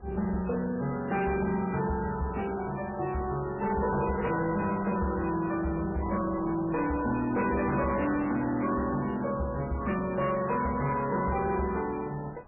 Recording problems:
lossy codec; MP3, log-spectral distance 4 dB, nothing above 2.4 kHz
distortion; soft clipping, signal-to-distortion ratio 12 dB
wind noise; below 980 Hz, SNR 22 dB

